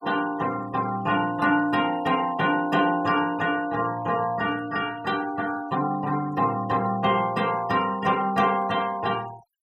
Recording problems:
denoising artefacts; signal-to-artefact ratio 21 dB

